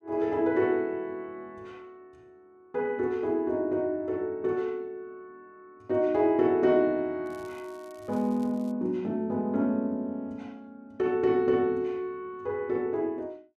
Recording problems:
crackling; from 7.5 to 8.5 s; loose cable, SNR 30 dB

